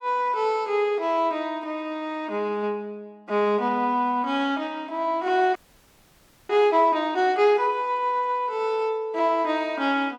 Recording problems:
frozen audio; at 5.5 s for 1 s

